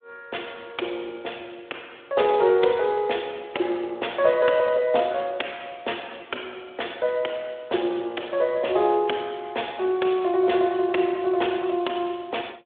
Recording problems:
telephone audio; 300 Hz to 3.6 kHz, Speex

